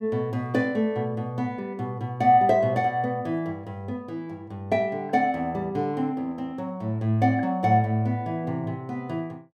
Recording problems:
none

